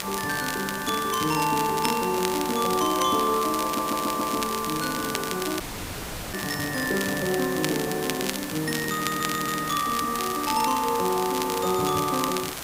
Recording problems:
background hiss; slope -3 dB per octave, SNR 9 dB
wind noise; below 1 kHz, SNR 23 dB
crackle; vinyl, SNR 8 dB
stutter; at 3.5 s and at 9 s
audio cutting out; at 5.5 s for 0.5 s

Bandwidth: 15.5 kHz